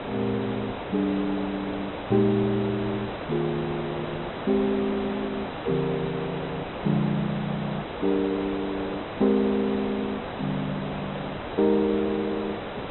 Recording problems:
treble cut off; nothing above 4 kHz
background hiss; SNR 6 dB

